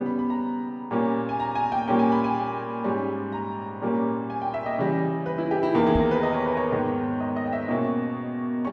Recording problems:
knock on the microphone; at 6 s; peak +1 dB vs average level

